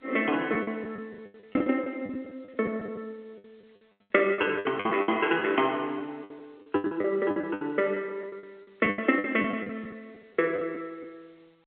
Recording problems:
telephone audio; 300 Hz to 3.4 kHz, G.711
lost packets; 15% of the sound replaced, filled with the last packet

